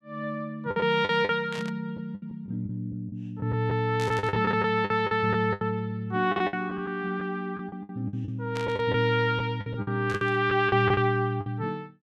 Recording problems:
lost packets; 12% of the sound replaced, filled with the last packet
static burst; 4 times, first at 1.5 s; peak -8 dB vs average level

